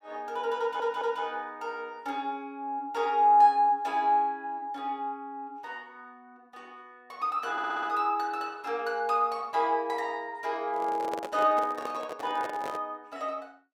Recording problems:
audio stuttering; at 0.5 s and at 7.5 s
handling noise; from 11 to 13 s; peak -3 dB vs average level

